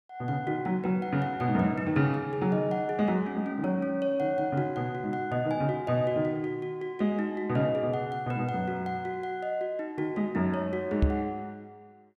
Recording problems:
microphone bump; at 11 s; peak +8 dB vs average level

